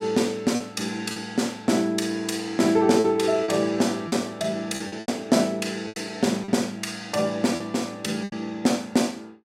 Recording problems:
packet loss; 6% of the sound replaced, filled with repeated pitch periods

